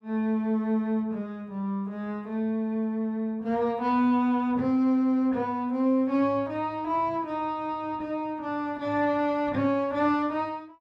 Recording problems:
none

